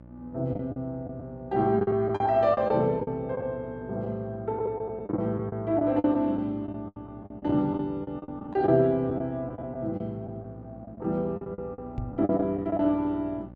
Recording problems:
mains hum; 60 Hz, harmonics up to 1.2 kHz, SNR 20 dB
packet loss; 12% of the sound replaced, filled with the last packet
microphone bump; at 12 s; peak -2 dB vs average level

